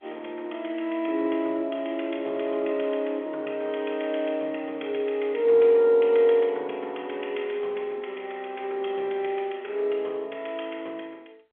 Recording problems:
telephone audio; 260 Hz to 3.4 kHz, G.711

